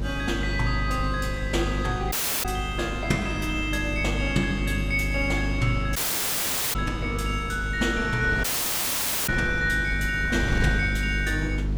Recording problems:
hum; 50 Hz, harmonics up to 450 Hz, SNR 4 dB
wind on the microphone; below 310 Hz, SNR 10 dB
audio cutting out; at 2 s, at 6 s for 1 s and at 8.5 s for 1 s

